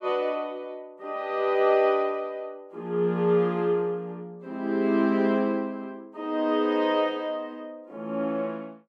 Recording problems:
none

